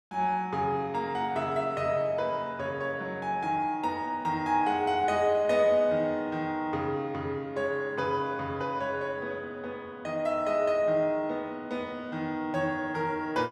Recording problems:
none

